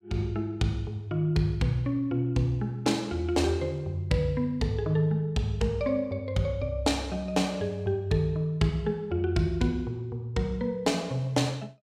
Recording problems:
none

